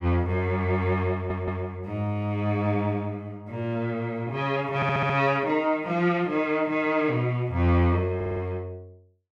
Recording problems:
audio stuttering; at 1 s, at 5 s and at 8 s

